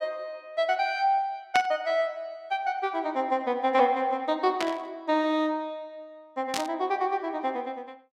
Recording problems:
static burst; at 1.5 s, at 4.5 s and at 6.5 s; peak +2 dB vs average level

